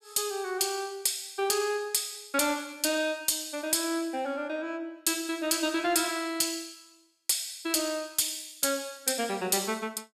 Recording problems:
distorted audio; soft clipping, signal-to-distortion ratio 6 dB

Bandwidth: 14.5 kHz